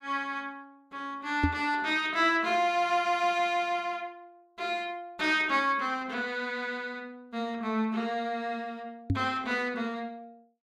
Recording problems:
knock on the microphone; at 1.5 s and at 9 s; peak +6 dB vs average level

